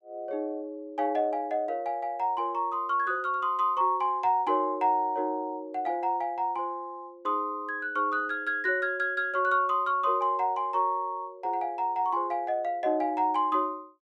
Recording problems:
none

